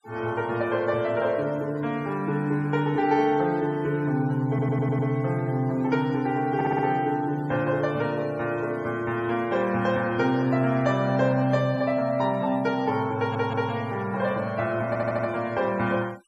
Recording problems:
noise reduction artefacts; signal-to-artefact ratio 24 dB
stutter; 4 times, first at 4.5 s

